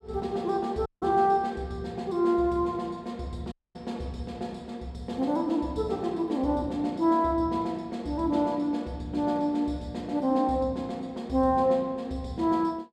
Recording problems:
audio cutting out; at 1 s and at 3.5 s

